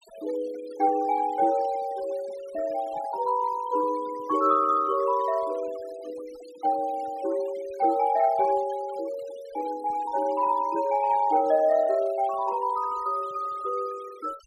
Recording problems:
denoising artefacts; signal-to-artefact ratio 22 dB

